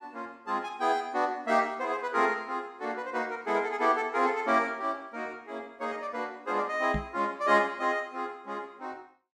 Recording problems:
knock on the microphone; at 7 s; peak +1 dB vs average level

